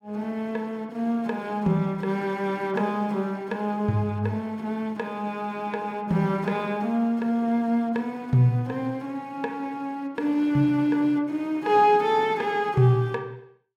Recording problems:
none

